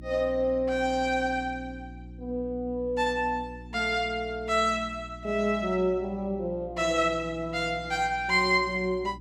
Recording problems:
hum; 60 Hz, harmonics up to 360 Hz, SNR 17 dB

